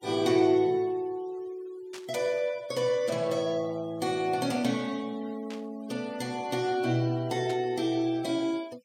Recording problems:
noise reduction artefacts; signal-to-artefact ratio 24 dB
burst of static; at 2 s, at 5.5 s and at 7.5 s; peak -10 dB vs average level

